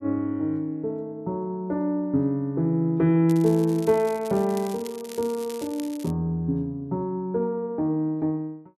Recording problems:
crackling; from 3.5 to 6 s; loose cable, SNR 18 dB

